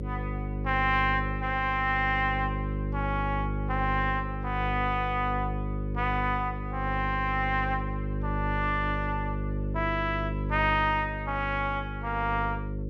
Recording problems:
electrical hum; 50 Hz, harmonics up to 550 Hz, SNR 4 dB

